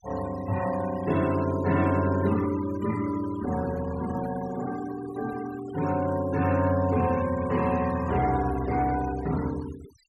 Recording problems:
noise reduction artefacts; signal-to-artefact ratio 16 dB

